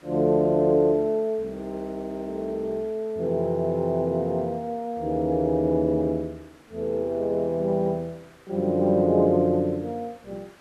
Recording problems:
hiss; SNR 29 dB

